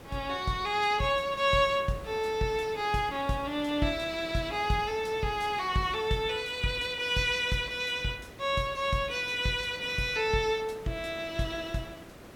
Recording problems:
hiss; slope -6 dB per octave, SNR 18 dB

